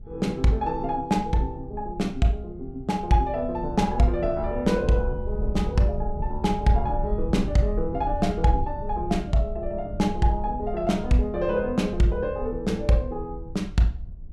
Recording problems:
rumble; below 70 Hz, SNR 10 dB

